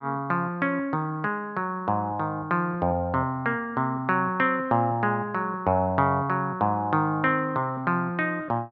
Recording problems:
none

